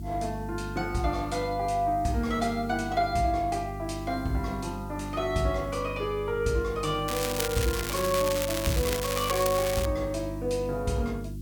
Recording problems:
hum; 50 Hz, harmonics up to 350 Hz, SNR 9 dB
hiss; slope +5 dB per octave, SNR 26 dB
crackle; from 7 to 10 s; loose cable, SNR 4 dB

